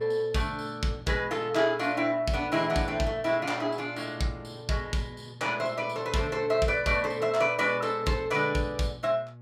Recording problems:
hum; 60 Hz, harmonics up to 1.1 kHz, SNR 19 dB

